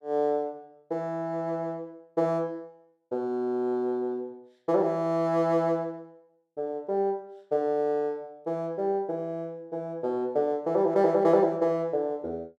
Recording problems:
none

